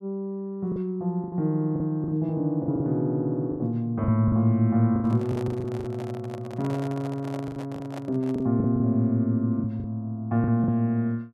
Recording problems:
lost packets; 10% of the sound replaced, filled with the last packet
microphone handling noise; from 5 to 8.5 s; peak -8 dB vs average level

